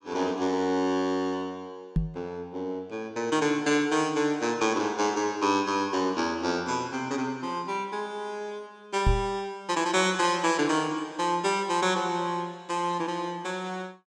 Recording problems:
knock on the microphone; at 2 s and at 9 s; peak +6 dB vs average level

